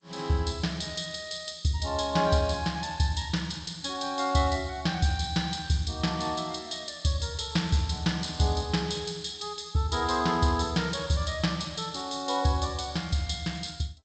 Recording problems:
codec artefacts; G.722, log-spectral distance 7 dB, nothing above 7.8 kHz

